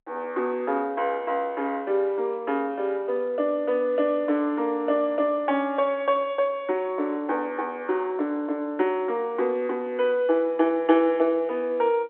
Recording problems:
phone line; 260 Hz to 4 kHz, G.711

